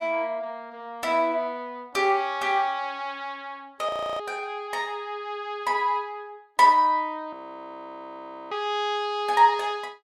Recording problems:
frozen audio; at 4 s and at 7.5 s for 1 s

